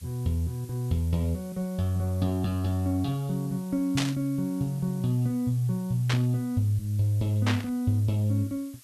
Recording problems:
background hiss; slope +4 dB per octave, SNR 23 dB
burst of static; at 4 s, at 6 s and at 7.5 s; peak +2 dB vs average level

